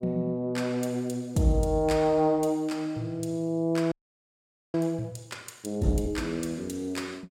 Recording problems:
frozen audio; at 4 s for 1 s

